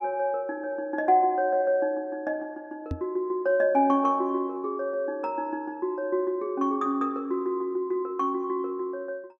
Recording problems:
microphone bump; at 3 s; peak -1 dB vs average level

